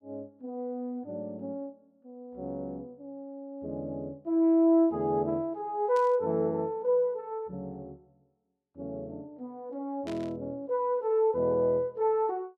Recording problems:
burst of static; at 6 s and at 10 s; peak -12 dB vs average level

